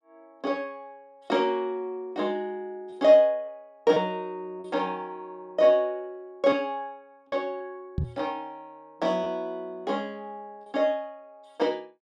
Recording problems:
lost packets; 2% of the sound replaced, filled with repeated pitch periods
microphone thump; at 8 s; peak +1 dB vs average level

